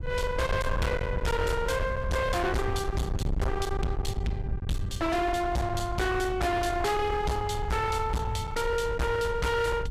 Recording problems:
distortion; hard clipping, signal-to-distortion ratio 6 dB
wind on the microphone; below 220 Hz, SNR 5 dB

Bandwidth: 15 kHz